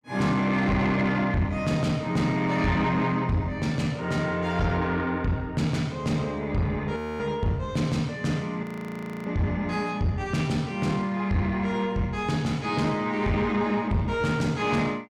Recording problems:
distorted audio; soft clipping, signal-to-distortion ratio 10 dB
audio freezing; at 7 s and at 8.5 s for 0.5 s

